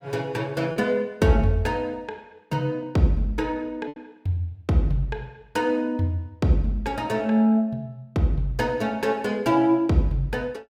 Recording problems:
packet loss; 1.2% of the sound replaced, filled with repeated pitch periods

